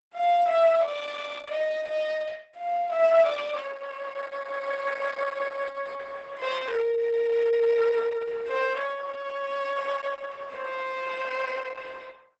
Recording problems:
lossy compression; Opus, log-spectral distance 4 dB, nothing above 8 kHz

